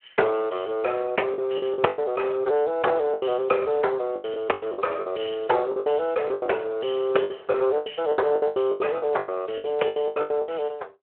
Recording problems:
telephone audio; 340 Hz to 3.1 kHz, Speex
lost packets; 16% of the sound replaced, filled with the last packet

